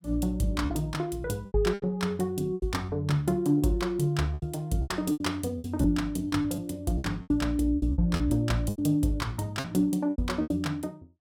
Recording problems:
packet loss; 12% of the sound replaced, filled with repeated pitch periods

